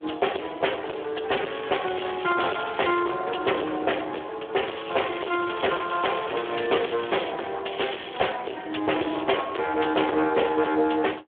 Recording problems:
phone line; 320 Hz to 3.4 kHz, Speex
distorted audio; hard clipping, uneven, signal-to-distortion ratio 6 dB
crackling; 4 times, first at 1.5 s; loose cable, SNR 11 dB

